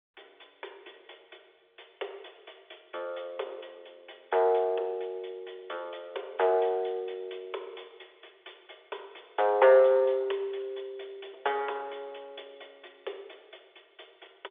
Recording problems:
phone line; 320 Hz to 3.7 kHz, G.711

